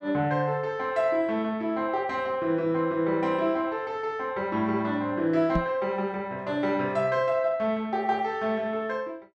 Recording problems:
microphone thump; at 5.5 s; peak +3 dB vs average level

